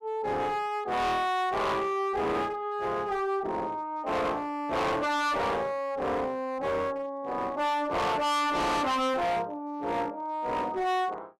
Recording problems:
distortion; hard clipping, uneven, signal-to-distortion ratio 5 dB

